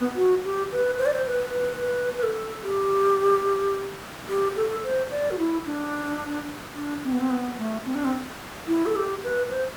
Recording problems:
background hiss; SNR 12 dB

